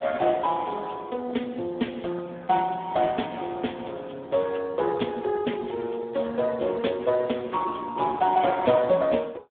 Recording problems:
telephone audio; 190 Hz to 3.6 kHz, Speex

